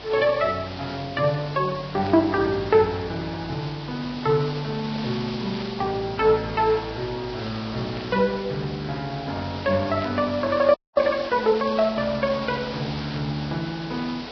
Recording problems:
lossy compression; Vorbis, log-spectral distance 10 dB
hum; 50 Hz, harmonics up to 450 Hz, SNR 23 dB
hiss; slope -2 dB per octave, SNR 13 dB
static burst; 5 times, first at 2 s; peak -12 dB vs average level
audio freezing; at 11 s

